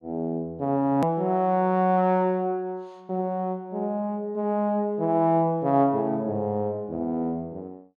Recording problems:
click at an edit; at 1 s

